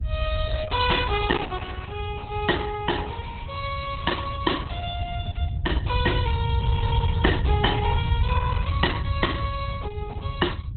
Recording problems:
codec artefacts; Opus, log-spectral distance 3 dB, nothing above 4 kHz
low-frequency rumble; below 94 Hz, SNR -2 dB

